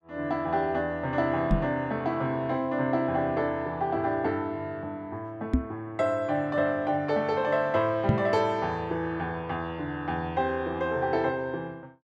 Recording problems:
microphone bump; at 1.5 s, at 5.5 s and at 8 s; peak +8 dB vs average level

